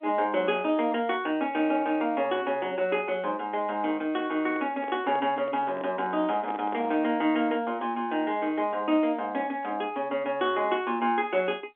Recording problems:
telephone audio; 220 Hz to 3.5 kHz, G.711
handling noise; from 4.5 to 7 s; peak -7 dB vs average level

